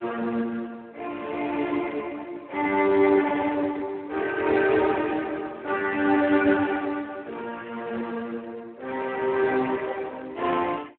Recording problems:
telephone audio; 260 Hz to 2.8 kHz, Speex

